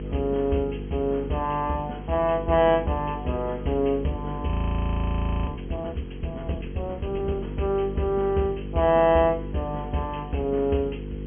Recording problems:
treble missing; nothing above 3.3 kHz
electrical hum; 50 Hz, harmonics up to 500 Hz, SNR 10 dB
background hiss; SNR 28 dB
frozen audio; at 4.5 s for 1 s

